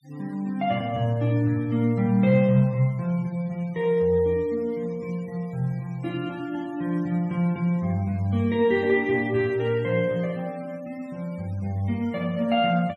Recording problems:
denoising artefacts; signal-to-artefact ratio 27 dB

